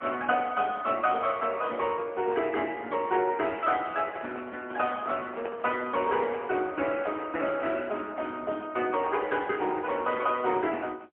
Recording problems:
phone line; 260 Hz to 3.3 kHz, AMR-NB, then MP3
handling noise; from 4 to 6.5 s; peak -6 dB vs average level

